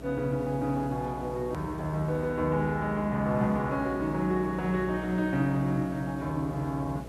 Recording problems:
electrical hum; 60 Hz, harmonics up to 660 Hz, SNR 14 dB
background hiss; slope -6 dB per octave, SNR 20 dB
hard cut with a click; at 1.5 s

